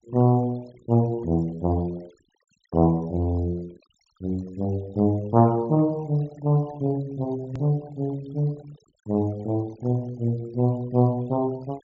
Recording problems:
treble cut off; nothing above 8 kHz
denoising artefacts; signal-to-artefact ratio 26 dB
click at an edit; at 7.5 s

